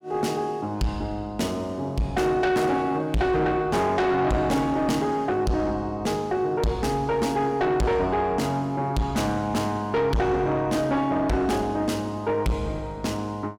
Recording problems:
distorted audio; soft clipping, signal-to-distortion ratio 7 dB

